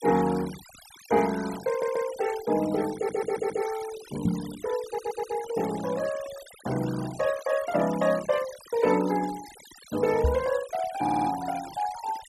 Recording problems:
noise reduction artefacts; signal-to-artefact ratio 15 dB
stutter; 4 times, first at 1.5 s
microphone thump; at 4.5 s and at 10 s; peak +6 dB vs average level

